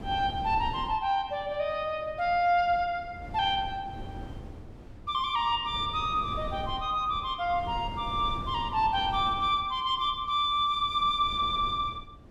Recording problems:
wind noise; below 270 Hz, SNR 15 dB

